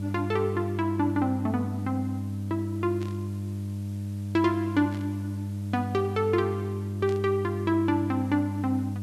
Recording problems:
hum; 50 Hz, harmonics up to 600 Hz, SNR 4 dB
hiss; slope 0 dB per octave, SNR 27 dB
burst of static; at 3 s, at 5 s and at 7 s; peak -13 dB vs average level

